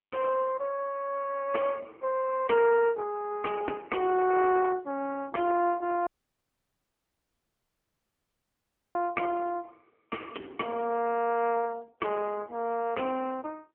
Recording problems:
phone line; 240 Hz to 2.2 kHz, AMR-NB
audio cutting out; at 6 s for 3 s

